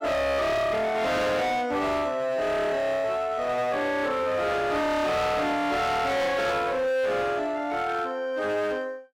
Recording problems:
distortion; hard clipping, signal-to-distortion ratio 7 dB

